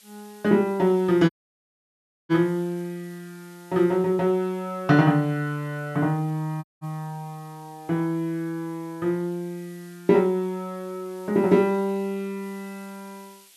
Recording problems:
background hiss; slope +3 dB per octave, SNR 28 dB
audio cutting out; at 1.5 s for 1 s and at 6.5 s

